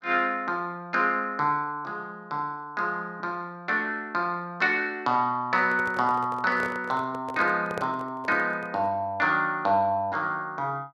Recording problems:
handling noise; from 5.5 to 9 s; peak -3 dB vs average level

